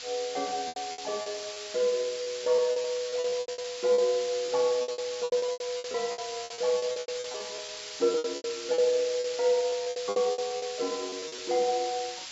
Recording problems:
treble missing; nothing above 8 kHz
hiss; slope +3 dB per octave, SNR 9 dB
lost packets; 17% of the sound replaced, filled with repeated pitch periods

